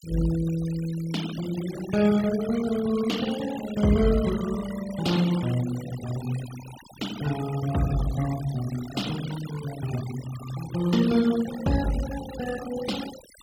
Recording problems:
noise reduction artefacts; signal-to-artefact ratio 14 dB

